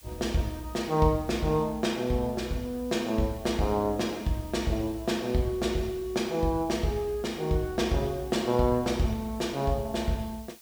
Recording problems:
background hiss; slope +1 dB per octave, SNR 22 dB

